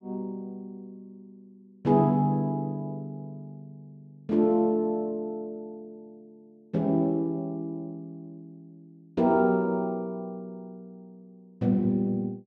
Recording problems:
none

